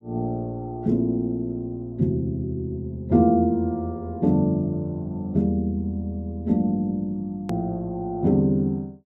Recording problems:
click at an edit; at 7.5 s

